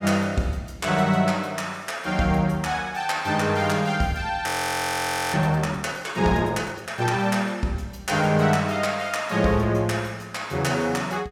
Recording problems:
frozen audio; at 4.5 s for 1 s

